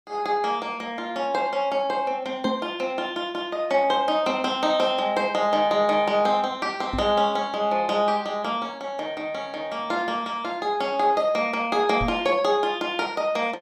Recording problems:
microphone bump; at 2.5 s, at 7 s and at 12 s; peak -1 dB vs average level

